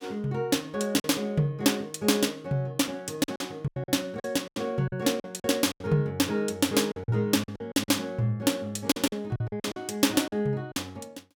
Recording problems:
lost packets; 10% of the sound replaced, filled with silence

